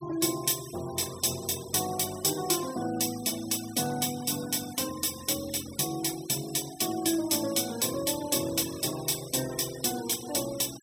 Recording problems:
noise reduction artefacts; signal-to-artefact ratio 16 dB

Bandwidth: 16 kHz